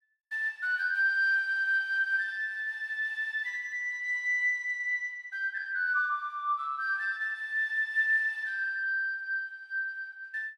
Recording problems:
none

